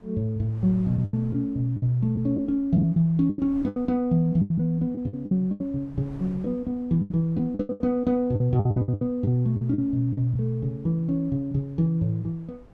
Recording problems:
wind on the microphone; below 340 Hz, SNR 24 dB
packet loss; 11% of the sound replaced, filled with the last packet

